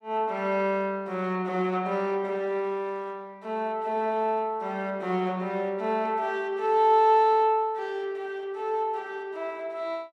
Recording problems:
none

